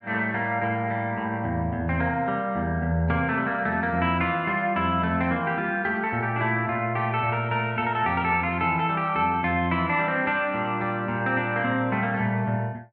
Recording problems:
none

